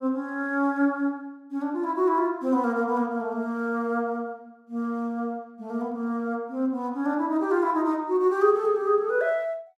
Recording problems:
none

